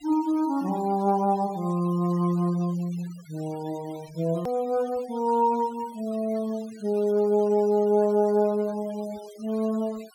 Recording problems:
noise reduction artefacts; signal-to-artefact ratio 24 dB
click at an edit; at 4.5 s

